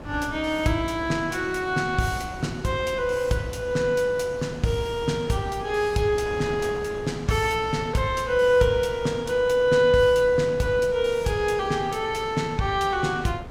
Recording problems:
wind on the microphone; below 680 Hz, SNR 16 dB

